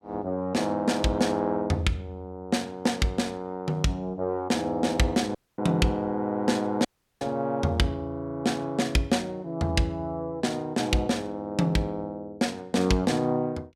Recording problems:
audio cutting out; at 5.5 s and at 7 s

